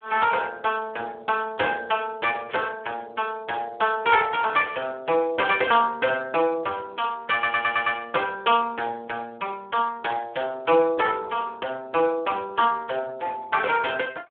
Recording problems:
telephone audio; 300 Hz to 3.5 kHz, Speex
burst of static; at 2.5 s and at 7 s; peak -14 dB vs average level
audio stuttering; at 7.5 s

